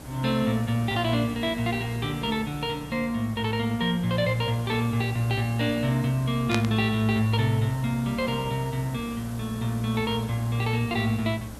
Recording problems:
mains hum; 60 Hz, harmonics up to 300 Hz, SNR 19 dB
hiss; SNR 16 dB
burst of static; at 6.5 s; peak +1 dB vs average level

